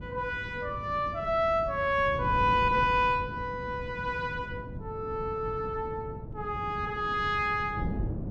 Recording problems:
wind on the microphone; below 220 Hz, SNR 10 dB

